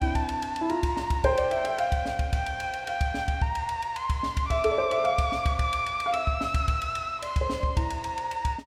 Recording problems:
none

